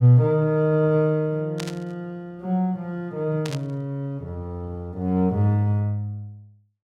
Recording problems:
static burst; at 1.5 s and at 3.5 s; peak -5 dB vs average level

